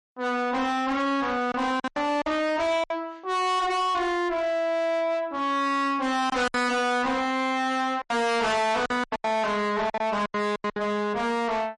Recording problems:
lossy codec; MP3, log-spectral distance 2 dB, nothing above 10.4 kHz
distorted audio; soft clipping, signal-to-distortion ratio 6 dB
packet loss; 8% of the sound replaced, filled with silence

